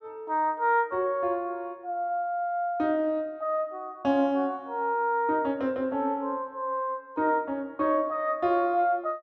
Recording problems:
none

